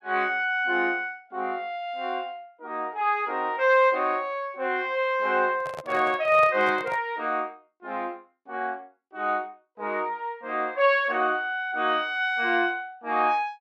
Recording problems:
handling noise; from 5.5 to 7 s; peak -7 dB vs average level

